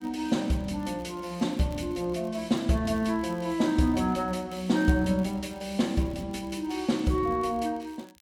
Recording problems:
crackle; vinyl, SNR 29 dB

